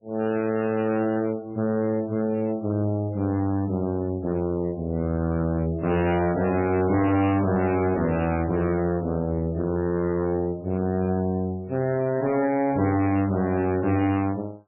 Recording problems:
codec artefacts; MP3, then MP3, log-spectral distance 2 dB, nothing above 2.8 kHz
distorted audio; hard clipping, uneven, signal-to-distortion ratio 7 dB

